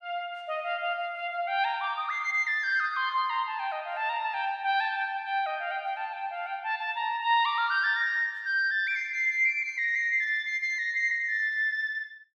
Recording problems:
none

